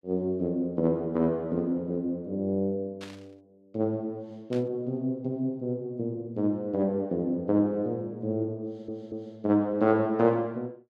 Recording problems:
static burst; at 3 s and at 4.5 s; peak -11 dB vs average level
audio stuttering; at 8.5 s

